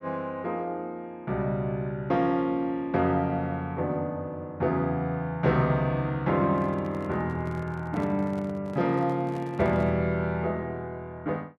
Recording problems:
microphone handling noise; from 6.5 to 10 s; peak -10 dB vs average level

